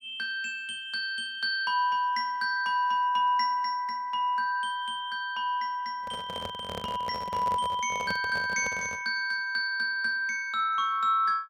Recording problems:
handling noise; from 6 to 9 s; peak -4 dB vs average level

